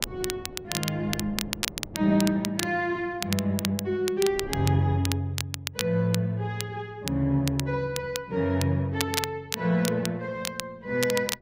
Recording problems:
wind on the microphone; below 370 Hz, SNR 16 dB
crackling; vinyl, SNR 7 dB

